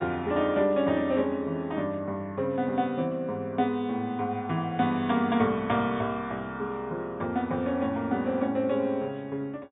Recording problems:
treble cut off; nothing above 4 kHz

